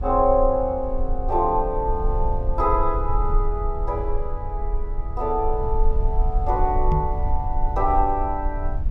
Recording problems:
rumble; below 50 Hz, SNR 4 dB
microphone thump; at 7 s; peak +5 dB vs average level

